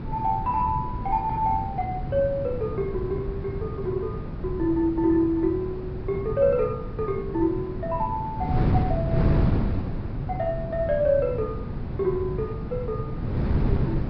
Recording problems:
treble missing; nothing above 5.5 kHz
wind on the microphone; below 210 Hz, SNR 3 dB

